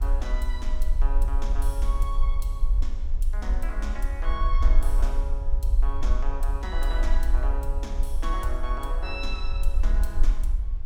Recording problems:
rumble; below 44 Hz, strongest tone 22 Hz, SNR -8 dB
wind on the microphone; below 360 Hz, SNR 18 dB

